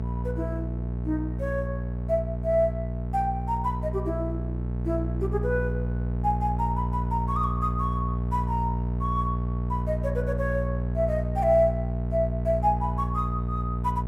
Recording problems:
hum; 60 Hz, harmonics up to 660 Hz, SNR 1 dB

